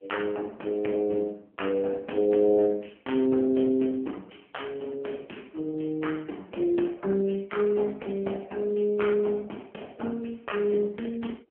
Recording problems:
phone line; 220 Hz to 3.2 kHz, AMR-NB

